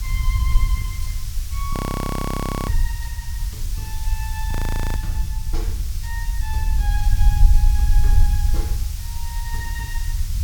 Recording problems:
background hiss; slope +3 dB per octave, SNR 2 dB
low-frequency rumble; below 62 Hz, SNR -11 dB
frozen audio; at 1.5 s for 1 s and at 4.5 s

